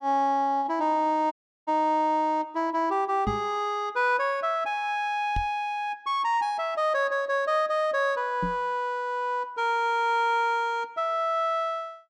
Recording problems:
dropout; at 1.5 s
microphone thump; at 3.5 s, at 5.5 s and at 8.5 s; peak 0 dB vs average level

